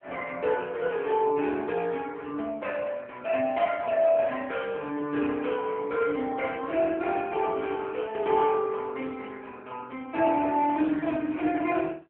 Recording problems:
telephone audio; 170 Hz to 3.1 kHz, AMR-NB

